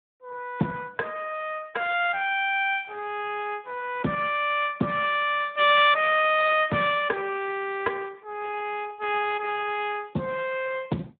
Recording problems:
phone line; 190 Hz to 3.7 kHz, Speex

